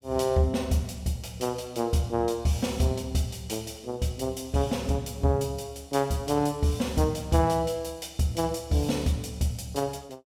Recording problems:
none

